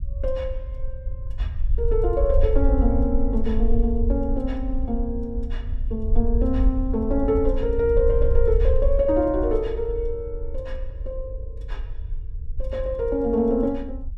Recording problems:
rumble; below 58 Hz, SNR 3 dB

